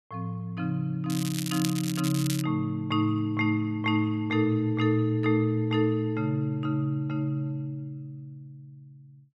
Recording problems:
crackle; from 1 to 2.5 s; loose cable, SNR 8 dB

